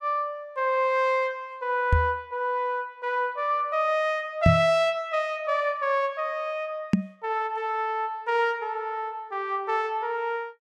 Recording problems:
microphone bump; at 2 s, at 4.5 s and at 7 s; peak +10 dB vs average level

